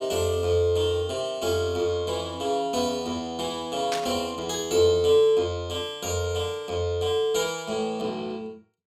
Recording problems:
burst of static; at 4 s; peak -1 dB vs average level

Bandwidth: 15.5 kHz